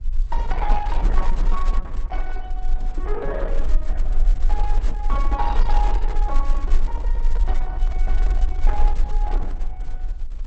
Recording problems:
codec artefacts; Opus, log-spectral distance 2 dB
rumble; below 36 Hz, strongest tone 20 Hz, SNR -8 dB
handling noise; from 6 to 9 s; peak -6 dB vs average level

